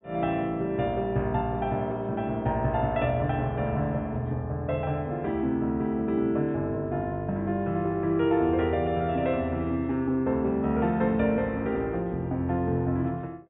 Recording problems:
treble cut off; nothing above 4 kHz

